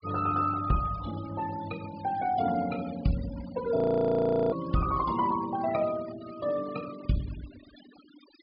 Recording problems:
treble cut off; nothing above 5.1 kHz
denoising artefacts; signal-to-artefact ratio 17 dB
frozen audio; at 4 s for 0.5 s

